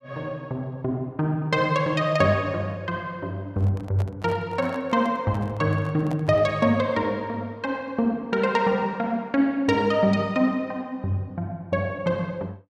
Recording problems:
handling noise; from 3.5 to 6.5 s; peak -8 dB vs average level

